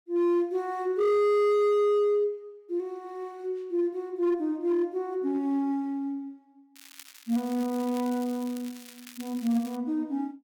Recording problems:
distorted audio; hard clipping, signal-to-distortion ratio 10 dB
crackle; from 7 to 10 s; loose cable, SNR 19 dB

